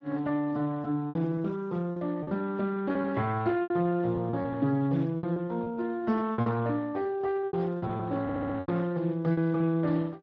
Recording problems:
lossy codec; Speex, log-spectral distance 2 dB
packet loss; 12% of the sound replaced, filled with repeated pitch periods
stutter; at 8 s

